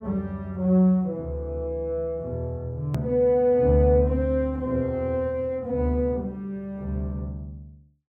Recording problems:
hard cut with a click; at 3 s

